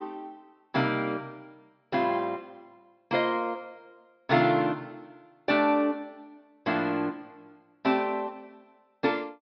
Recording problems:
treble missing; nothing above 5.5 kHz

